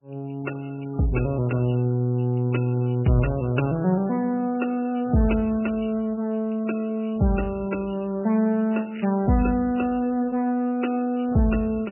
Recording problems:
lossy compression; MP3, log-spectral distance 4 dB, nothing above 2.7 kHz
crackling; at 9 s; loose cable, SNR 18 dB

